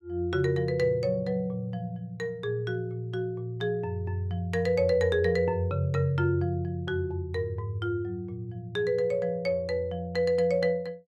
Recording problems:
none

